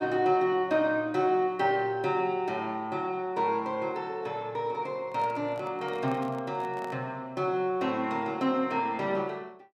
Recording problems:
microphone handling noise; from 5 to 7 s; peak -9 dB vs average level

